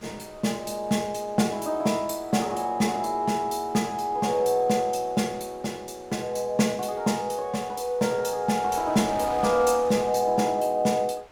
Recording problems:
wind noise; below 2.2 kHz, SNR 22 dB

